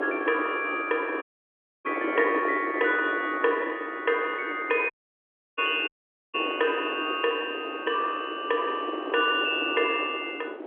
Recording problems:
telephone audio; 260 Hz to 3.4 kHz, G.711
wind noise; below 630 Hz, SNR 8 dB
audio cutting out; at 1 s for 0.5 s, at 5 s for 0.5 s and at 6 s

